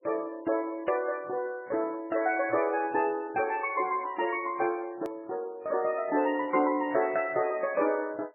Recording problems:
lossy compression; MP3, log-spectral distance 3 dB, nothing above 2.4 kHz
edit click; at 5 s

